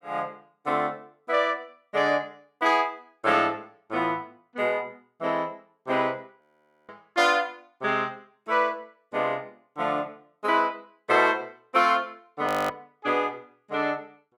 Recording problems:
audio freezing; at 6.5 s and at 12 s

